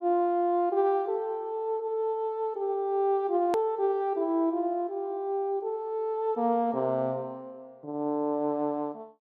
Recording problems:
edit click; at 3.5 s

